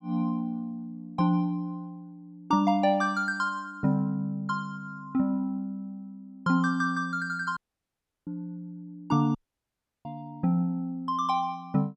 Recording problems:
audio cutting out; at 7.5 s for 0.5 s and at 9.5 s for 0.5 s

